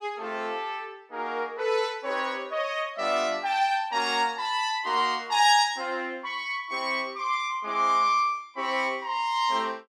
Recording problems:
none

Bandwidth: 14.5 kHz